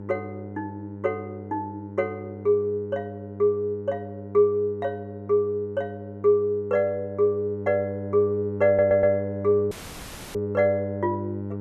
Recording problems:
electrical hum; 50 Hz, harmonics up to 1 kHz, SNR 11 dB
stutter; at 8.5 s
dropout; at 9.5 s for 0.5 s

